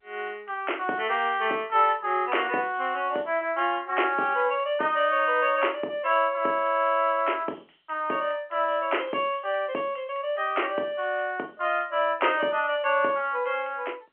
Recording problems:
phone line; 300 Hz to 3.1 kHz, G.711

